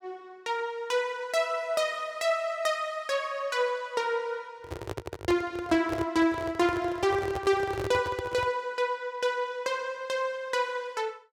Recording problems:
handling noise; from 4.5 to 8.5 s; peak -2 dB vs average level

